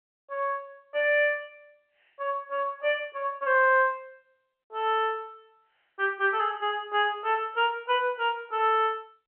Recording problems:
phone line; 300 Hz to 3.2 kHz, G.711

